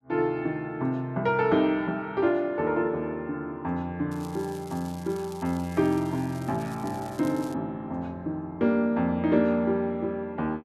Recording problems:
crackling; from 4 to 7.5 s; loose cable, SNR 22 dB

